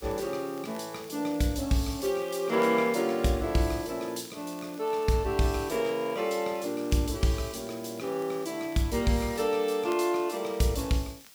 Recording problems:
hiss; slope +1 dB per octave, SNR 20 dB
crackling; vinyl, SNR 28 dB

